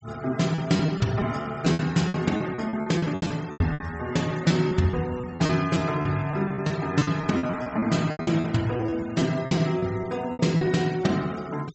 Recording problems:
treble missing; nothing above 8 kHz
noise reduction artefacts; signal-to-artefact ratio 20 dB
packet loss; 15% of the sound replaced, filled with repeated pitch periods

